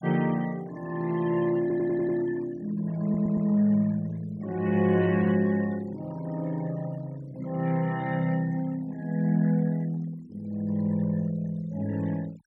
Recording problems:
noise reduction artefacts; signal-to-artefact ratio 22 dB
stutter; at 1.5 s and at 3 s

